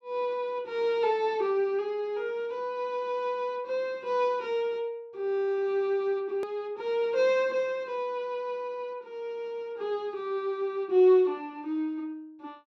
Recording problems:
edit click; at 6.5 s

